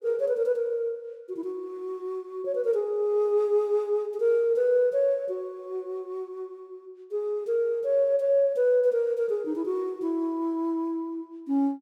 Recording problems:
none

